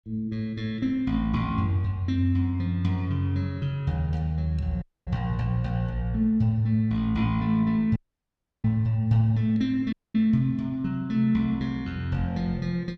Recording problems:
audio cutting out; at 5 s, at 8 s for 0.5 s and at 10 s

